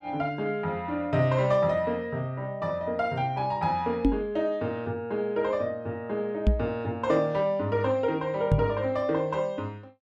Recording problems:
microphone thump; at 4 s, at 6.5 s and at 8.5 s; peak +9 dB vs average level

